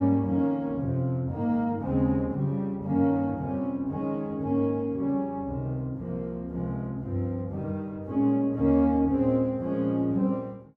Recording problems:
none

